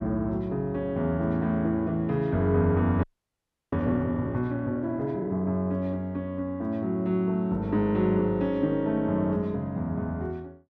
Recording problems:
audio freezing; at 3 s for 0.5 s

